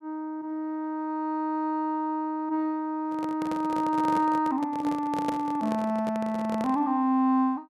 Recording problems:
handling noise; from 3 to 7 s; peak -1 dB vs average level

